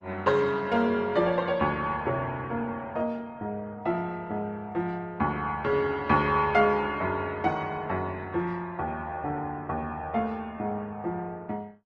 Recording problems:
lossy codec; MP3, then Opus, log-spectral distance 2 dB

